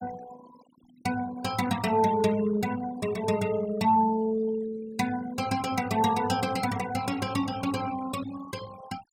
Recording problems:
noise reduction artefacts; signal-to-artefact ratio 16 dB

